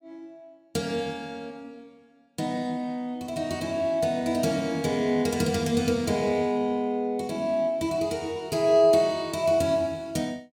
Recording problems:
none

